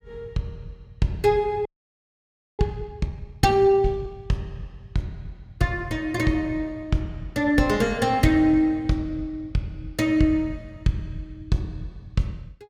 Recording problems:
frozen audio; at 1.5 s for 1 s

